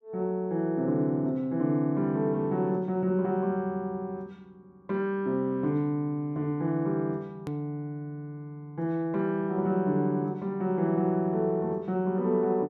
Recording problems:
click at an edit; at 7.5 s

